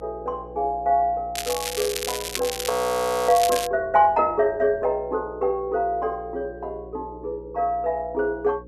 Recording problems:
electrical hum; 60 Hz, harmonics up to 540 Hz, SNR 20 dB
crackle; from 1.5 to 3.5 s; loose cable, SNR 6 dB
audio freezing; at 2.5 s for 0.5 s

